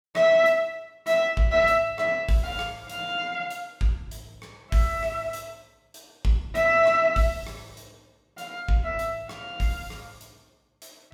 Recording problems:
none

